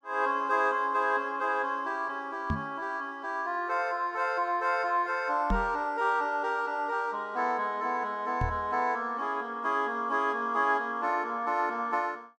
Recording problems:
microphone bump; at 2.5 s, at 5.5 s and at 8.5 s; peak +2 dB vs average level

